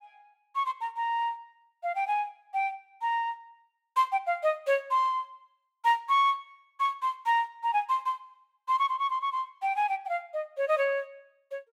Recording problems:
none

